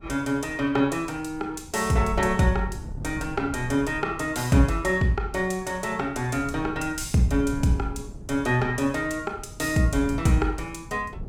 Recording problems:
wind noise; below 150 Hz, SNR 15 dB

